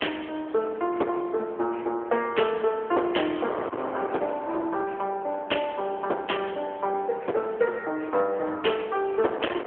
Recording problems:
telephone audio; 300 Hz to 3.3 kHz, AMR-NB
distortion; hard clipping, uneven, signal-to-distortion ratio 13 dB
wind noise; below 990 Hz, SNR 12 dB

